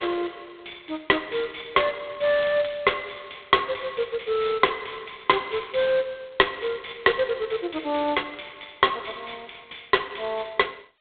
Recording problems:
telephone audio; 320 Hz to 3.7 kHz, G.726

